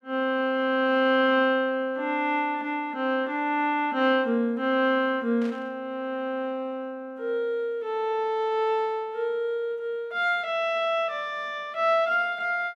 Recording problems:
burst of static; at 5.5 s; peak -15 dB vs average level

